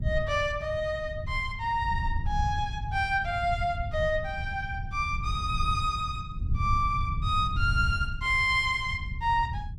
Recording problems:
rumble; below 110 Hz, SNR 6 dB

